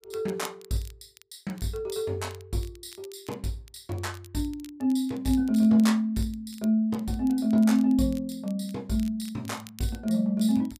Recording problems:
crackle; vinyl, SNR 24 dB

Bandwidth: 15 kHz